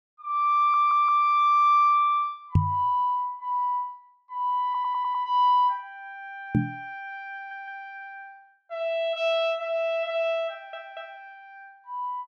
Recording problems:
stutter; 4 times, first at 0.5 s
microphone bump; at 2.5 s and at 6.5 s; peak +7 dB vs average level

